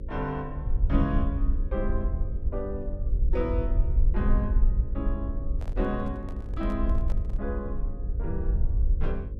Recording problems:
mains hum; 50 Hz, harmonics up to 550 Hz, SNR 10 dB
low-frequency rumble; below 60 Hz, SNR -4 dB
microphone handling noise; from 5.5 to 7.5 s; peak -7 dB vs average level

